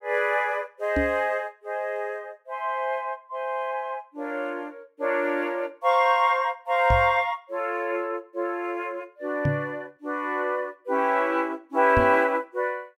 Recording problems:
microphone thump; 4 times, first at 1 s; peak +3 dB vs average level

